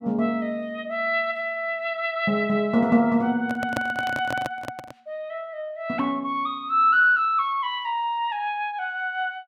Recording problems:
microphone handling noise; from 3.5 to 5 s; peak 0 dB vs average level

